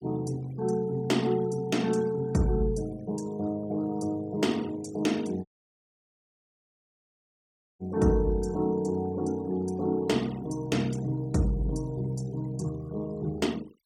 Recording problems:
denoising artefacts; signal-to-artefact ratio 21 dB
audio cutting out; at 5.5 s for 2.5 s

